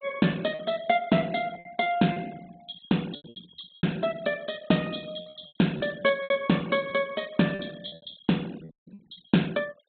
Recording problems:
treble cut off; nothing above 4 kHz
denoising artefacts; signal-to-artefact ratio 22 dB
lost packets; 10% of the sound replaced, filled with repeated pitch periods
audio cutting out; at 8.5 s

